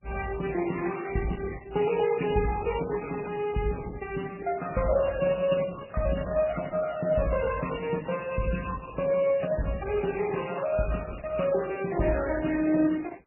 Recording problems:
lossy compression; Opus, then MP3, log-spectral distance 6 dB, nothing above 2.9 kHz

